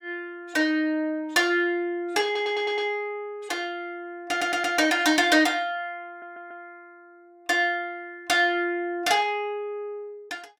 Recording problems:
stutter; at 2.5 s, at 4.5 s and at 6 s

